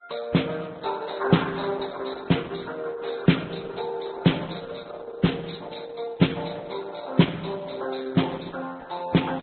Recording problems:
lossy codec; Opus, then Vorbis, log-spectral distance 8 dB, nothing above 4.1 kHz

